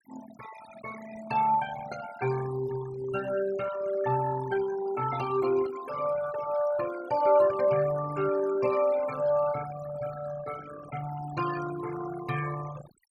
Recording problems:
noise reduction artefacts; signal-to-artefact ratio 12 dB

